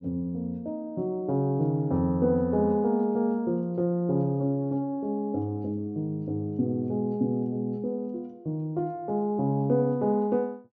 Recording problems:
low-pass filter; nothing above 6.4 kHz

